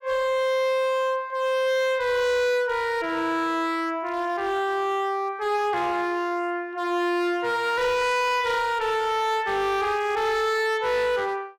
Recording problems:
distorted audio; hard clipping, signal-to-distortion ratio 8 dB

